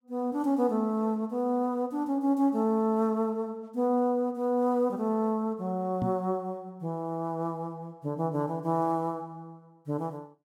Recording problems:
microphone thump; at 6 s; peak 0 dB vs average level

